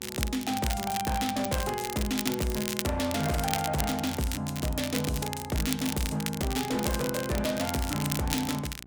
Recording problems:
distorted audio; hard clipping, signal-to-distortion ratio 11 dB
hum; 60 Hz, harmonics up to 1.1 kHz, SNR 23 dB
crackle; vinyl, SNR 5 dB

